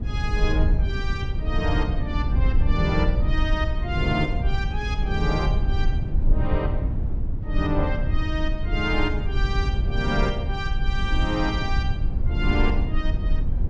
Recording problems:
rumble; below 74 Hz, SNR -2 dB

